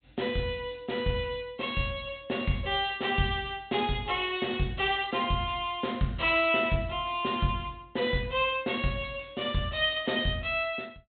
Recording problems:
low-pass filter; nothing above 4 kHz

